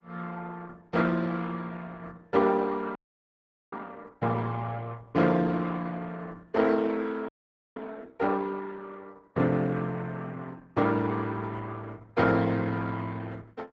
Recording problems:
codec artefacts; Opus, log-spectral distance 4 dB
frozen audio; at 3 s for 1 s and at 7.5 s

